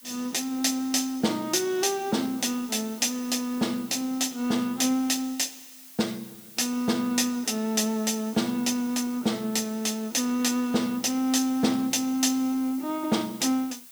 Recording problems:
hiss; slope +3 dB per octave, SNR 18 dB

